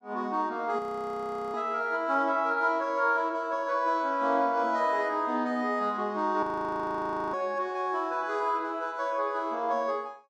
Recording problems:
frozen audio; at 1 s for 1 s and at 6.5 s for 1 s

